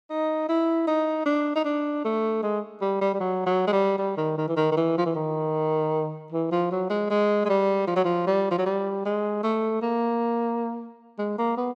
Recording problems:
none

